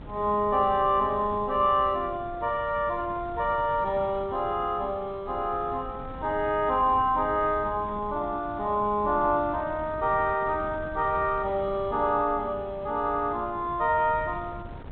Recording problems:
treble cut off; nothing above 4 kHz
wind on the microphone; below 320 Hz, SNR 16 dB

